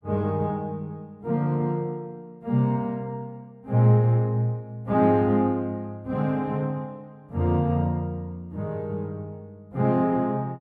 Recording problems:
none

